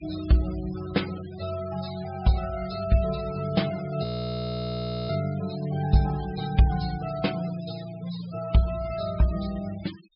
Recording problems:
treble cut off; nothing above 5.5 kHz
denoising artefacts; signal-to-artefact ratio 17 dB
frozen audio; at 4 s for 1 s

